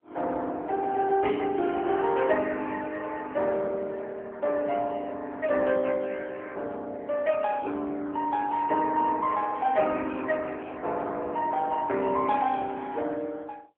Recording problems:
phone line; 240 Hz to 3.6 kHz, AMR-NB

